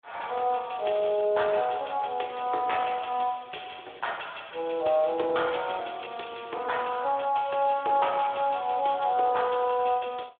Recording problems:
telephone audio; 300 Hz to 3.5 kHz, Speex

